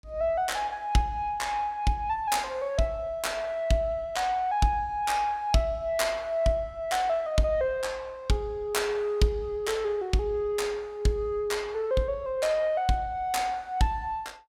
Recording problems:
none

